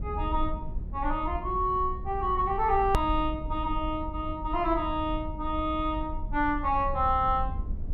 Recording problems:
low-frequency rumble; below 72 Hz, SNR 8 dB
click at an edit; at 3 s

